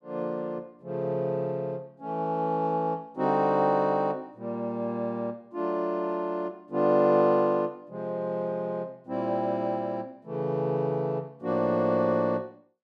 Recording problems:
none

